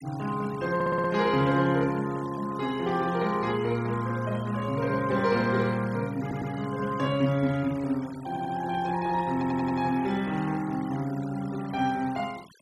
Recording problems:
noise reduction artefacts; signal-to-artefact ratio 19 dB
audio stuttering; 4 times, first at 1 s

